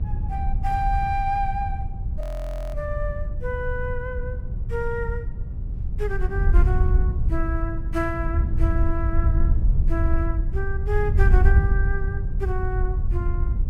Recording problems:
hum; 60 Hz, harmonics up to 600 Hz, SNR 12 dB
wind noise; below 76 Hz, SNR -5 dB
frozen audio; at 2 s for 0.5 s

